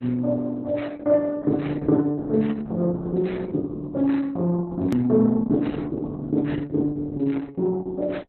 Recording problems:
lossy compression; Opus, log-spectral distance 2 dB, nothing above 13.7 kHz
hard cut with a click; at 5 s

